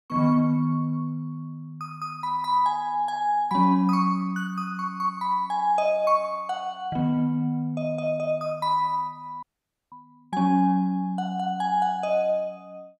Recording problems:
audio cutting out; at 9.5 s

